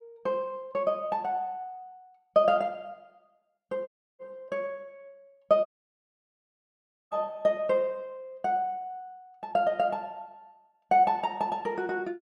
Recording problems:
audio cutting out; at 4 s and at 5.5 s for 1.5 s

